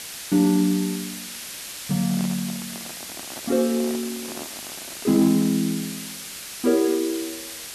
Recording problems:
background hiss; slope +2 dB per octave, SNR 10 dB
handling noise; from 2 to 5.5 s; peak -11 dB vs average level

